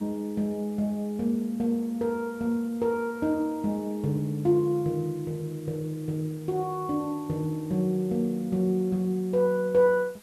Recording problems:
background hiss; slope -1 dB per octave, SNR 26 dB

